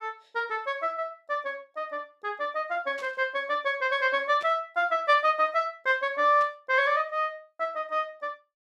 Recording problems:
burst of static; at 3 s, at 4.5 s and at 6.5 s; peak -14 dB vs average level

